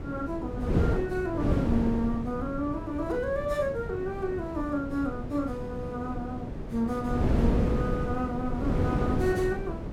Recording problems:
wind noise; below 310 Hz, SNR 0 dB

